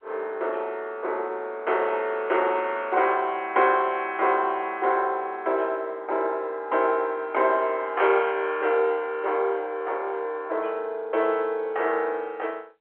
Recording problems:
phone line; 300 Hz to 3.4 kHz, G.711

